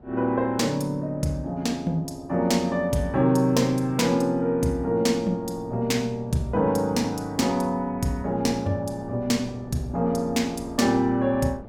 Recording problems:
wind on the microphone; below 430 Hz, SNR 22 dB

